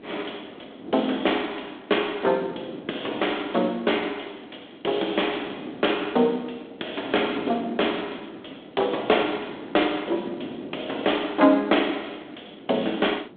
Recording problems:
phone line; 240 Hz to 3.6 kHz, G.726
wind noise; below 430 Hz, SNR 15 dB

